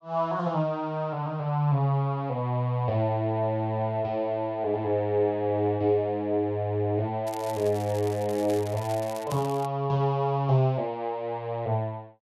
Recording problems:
crackling; from 7.5 to 9.5 s; loose cable, SNR 18 dB

